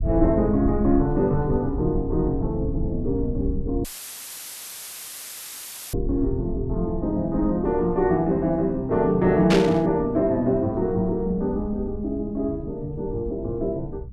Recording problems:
low-frequency rumble; below 90 Hz, SNR 10 dB
dropout; at 4 s for 2 s; filled with static
static burst; at 9.5 s; peak +2 dB vs average level

